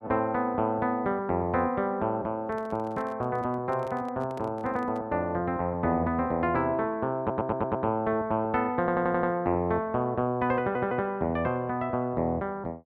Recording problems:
microphone handling noise; from 2.5 to 5 s; peak -11 dB vs average level
audio stuttering; at 7 s, at 9 s and at 11 s

